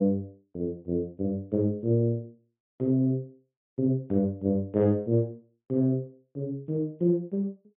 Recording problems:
low-pass filter; nothing above 3.5 kHz

